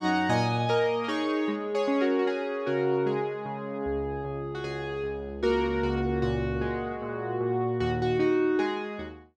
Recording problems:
none

